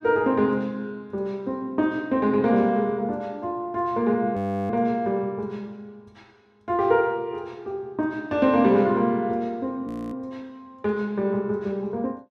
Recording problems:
frozen audio; at 4.5 s and at 10 s

